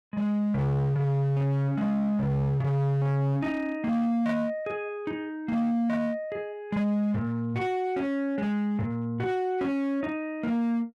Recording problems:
distorted audio; hard clipping, signal-to-distortion ratio 8 dB

